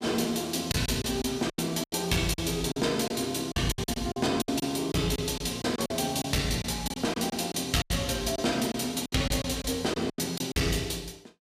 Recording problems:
distorted audio; hard clipping, uneven, signal-to-distortion ratio 12 dB
lost packets; 12% of the sound replaced, filled with silence

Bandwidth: 15 kHz